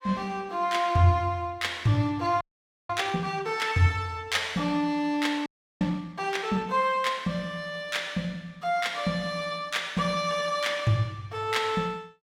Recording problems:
audio freezing; at 2.5 s and at 5.5 s

